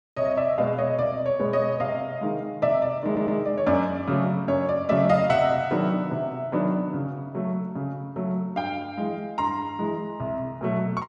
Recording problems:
audio stuttering; at 3 s

